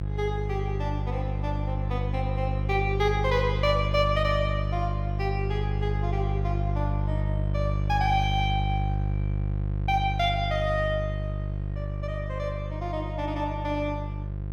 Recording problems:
hum; 50 Hz, harmonics up to 550 Hz, SNR 0 dB

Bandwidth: 17 kHz